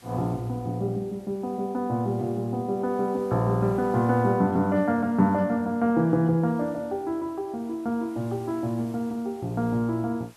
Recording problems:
hiss; slope -1 dB per octave, SNR 29 dB

